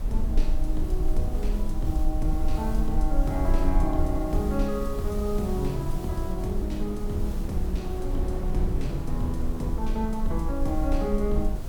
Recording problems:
hiss; SNR 18 dB
rumble; below 40 Hz, strongest tone 18 Hz, SNR 2 dB
wind on the microphone; below 220 Hz, SNR 6 dB

